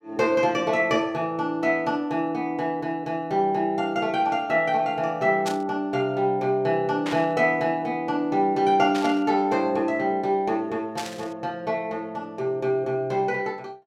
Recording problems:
burst of static; 4 times, first at 5.5 s; peak -4 dB vs average level

